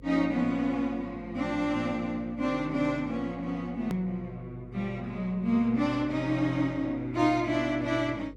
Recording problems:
hum; 50 Hz, harmonics up to 500 Hz, SNR 21 dB
click at an edit; at 4 s

